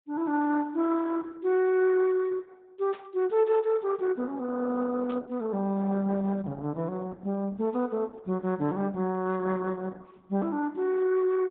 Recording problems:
low-pass filter; nothing above 4 kHz
lossy codec; Opus, log-spectral distance 2 dB
static burst; at 3 s and at 5 s; peak -16 dB vs average level

